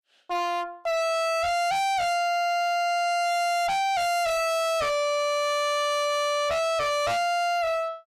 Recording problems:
distorted audio; hard clipping, signal-to-distortion ratio 5 dB

